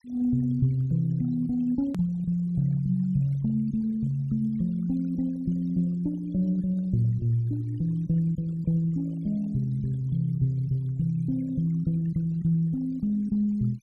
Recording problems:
noise reduction artefacts; signal-to-artefact ratio 28 dB
hard cut with a click; at 2 s

